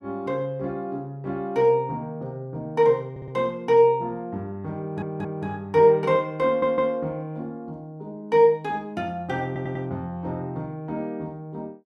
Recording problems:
stutter; 4 times, first at 3 s

